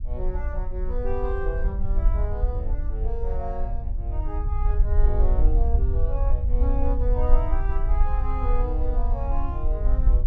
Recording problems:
low-frequency rumble; below 54 Hz, SNR -8 dB

